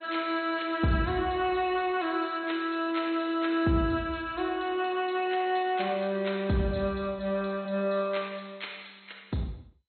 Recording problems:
codec artefacts; MP2, log-spectral distance 5 dB, nothing above 4.2 kHz

